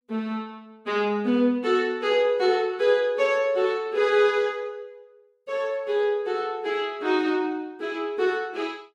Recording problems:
none

